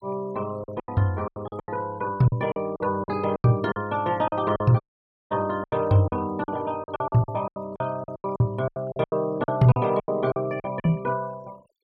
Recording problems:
noise reduction artefacts; signal-to-artefact ratio 24 dB
packet loss; 16% of the sound replaced, filled with silence
dropout; at 5 s for 0.5 s

